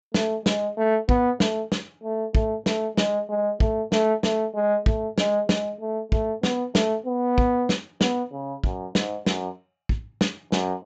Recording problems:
treble missing; nothing above 8 kHz

